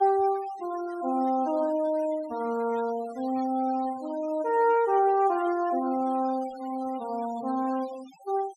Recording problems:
denoising artefacts; signal-to-artefact ratio 21 dB

